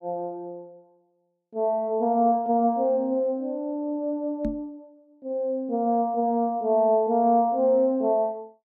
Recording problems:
microphone bump; at 4.5 s; peak -3 dB vs average level

